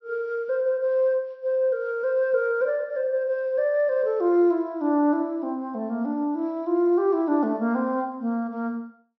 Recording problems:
low-pass filter; nothing above 5.8 kHz

